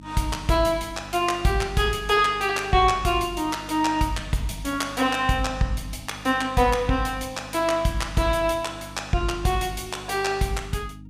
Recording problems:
electrical hum; 50 Hz, harmonics up to 300 Hz, SNR 19 dB

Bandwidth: 15.5 kHz